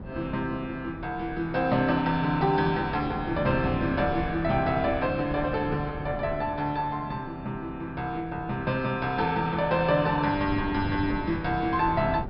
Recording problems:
low-pass filter; nothing above 5.2 kHz
wind noise; below 280 Hz, SNR 11 dB

